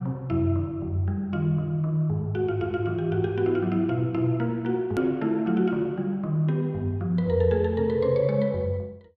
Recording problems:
click at an edit; at 5 s

